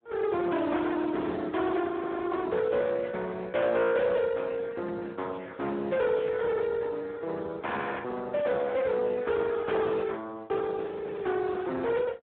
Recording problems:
telephone audio; 240 Hz to 3.6 kHz, Speex
distorted audio; hard clipping, signal-to-distortion ratio 11 dB
audio freezing; at 2 s and at 11 s

